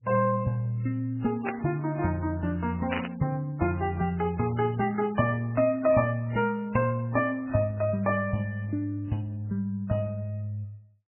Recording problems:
codec artefacts; AAC, then MP3, log-spectral distance 2 dB, nothing above 2.5 kHz
static burst; at 1.5 s and at 3 s; peak +1 dB vs average level

